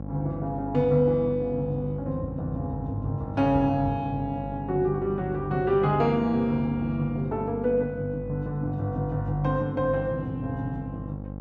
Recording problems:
hum; 50 Hz, harmonics up to 1.1 kHz, SNR 10 dB

